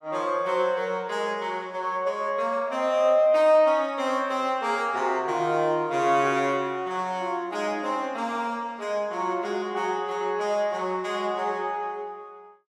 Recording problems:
none

